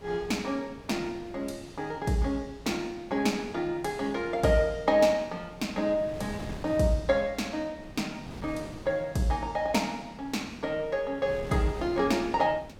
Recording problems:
wind on the microphone; below 540 Hz, SNR 16 dB

